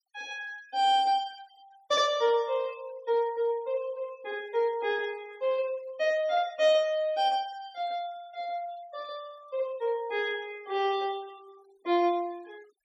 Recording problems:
denoising artefacts; signal-to-artefact ratio 26 dB

